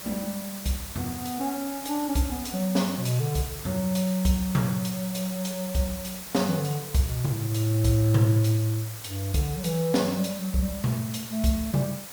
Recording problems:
background hiss; slope -1 dB per octave, SNR 10 dB

